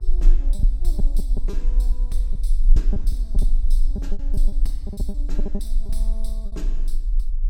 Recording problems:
hum; 60 Hz, harmonics up to 1.1 kHz, SNR 20 dB
rumble; below 36 Hz, strongest tone 24 Hz, SNR -15 dB
packet loss; 9% of the sound replaced, filled with repeated pitch periods

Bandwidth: 17 kHz